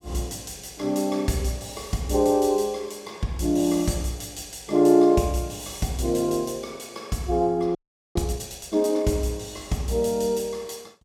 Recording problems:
frozen audio; at 8 s

